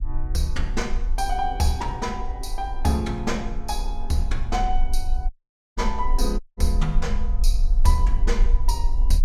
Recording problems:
low-frequency rumble; below 40 Hz, strongest tone 20 Hz, SNR 0 dB
audio cutting out; at 5.5 s and at 6.5 s

